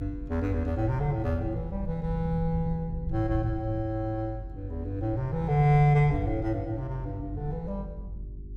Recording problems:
hum; 50 Hz, harmonics up to 400 Hz, SNR 23 dB
low-frequency rumble; below 98 Hz, strongest tone 48 Hz, SNR 9 dB

